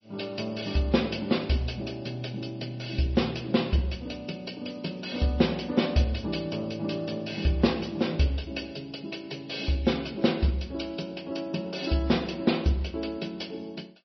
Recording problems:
lossy codec; MP3, log-spectral distance 5 dB, nothing above 5.3 kHz

